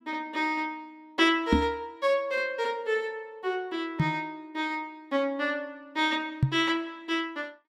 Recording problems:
knock on the microphone; at 1.5 s, at 4 s and at 6.5 s; peak +9 dB vs average level

